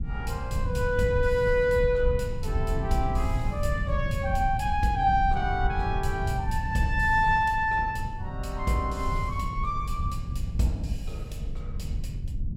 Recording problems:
low-frequency rumble; below 100 Hz, SNR 5 dB

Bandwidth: 17 kHz